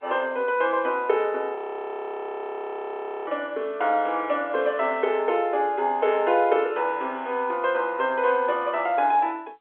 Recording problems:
telephone audio; 300 Hz to 3.6 kHz, G.711
frozen audio; at 1.5 s for 1.5 s

